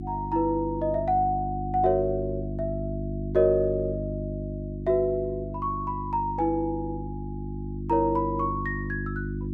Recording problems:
electrical hum; 50 Hz, harmonics up to 350 Hz, SNR 6 dB

